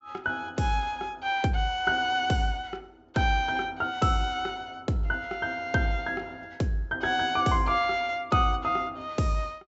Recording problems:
low-pass filter; nothing above 8 kHz

